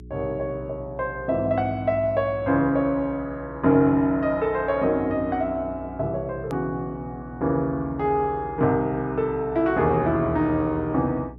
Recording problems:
electrical hum; 60 Hz, harmonics up to 420 Hz, SNR 20 dB
edit click; at 6.5 s

